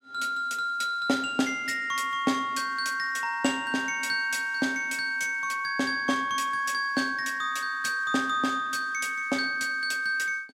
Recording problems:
none

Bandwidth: 16 kHz